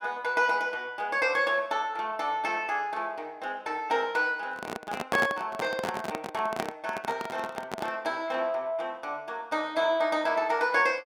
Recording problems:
handling noise; from 4.5 to 8 s; peak +3 dB vs average level

